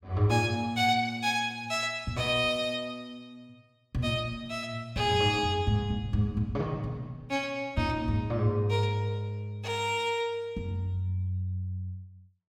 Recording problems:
none

